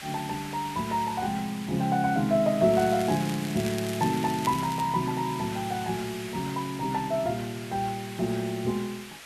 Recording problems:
background hiss; SNR 12 dB
crackle; from 2.5 to 5 s; loose cable, SNR 14 dB

